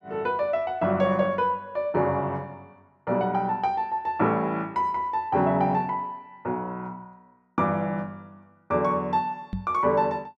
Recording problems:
knock on the microphone; at 9.5 s; peak -1 dB vs average level

